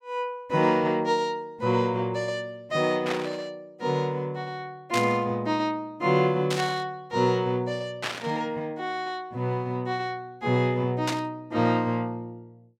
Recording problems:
static burst; 5 times, first at 3 s; peak +1 dB vs average level

